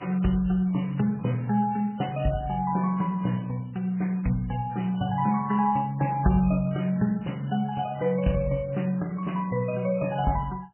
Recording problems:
lossy compression; MP3, log-spectral distance 4 dB, nothing above 2.5 kHz

